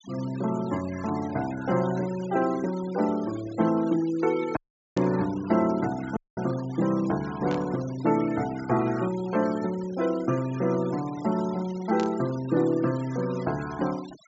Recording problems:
treble missing; nothing above 8 kHz
noise reduction artefacts; signal-to-artefact ratio 18 dB
audio cutting out; at 4.5 s and at 6 s
static burst; at 5 s, at 7.5 s and at 12 s; peak -8 dB vs average level

